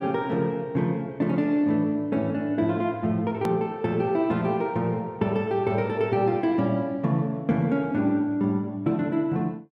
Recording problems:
hard cut with a click; at 3.5 s

